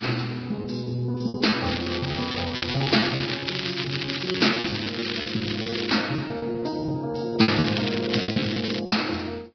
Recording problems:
lossy compression; AAC, then Vorbis, log-spectral distance 13 dB, nothing above 5.5 kHz
packet loss; 15% of the sound replaced, filled with repeated pitch periods
crackling; from 1.5 to 4.5 s, from 4.5 to 6 s and from 7.5 to 9 s; loose cable, SNR 4 dB

